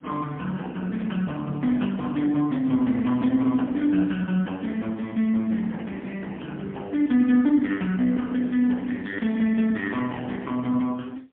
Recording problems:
phone line; 190 Hz to 3.6 kHz, AMR-NB, then MP3

